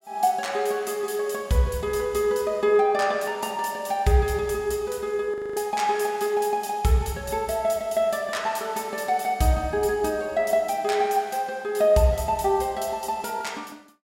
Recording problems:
audio freezing; at 5.5 s

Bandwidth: 16 kHz